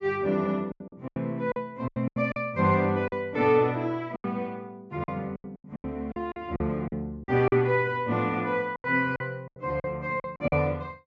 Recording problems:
treble cut off; nothing above 7.5 kHz
packet loss; 13% of the sound replaced, filled with silence

